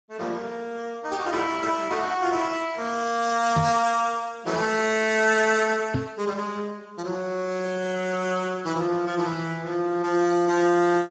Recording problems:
lossy codec; Speex, log-spectral distance 5 dB, nothing above 7.6 kHz
knock on the microphone; at 3.5 s and at 6 s; peak +3 dB vs average level

